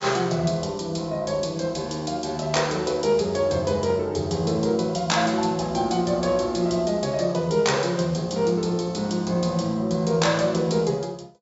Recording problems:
low-pass filter; nothing above 7.5 kHz
lossy compression; Vorbis, log-spectral distance 4 dB

